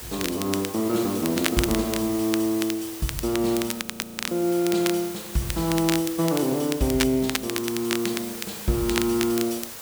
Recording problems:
background hiss; SNR 10 dB
crackling; vinyl, SNR 7 dB
frozen audio; at 4 s

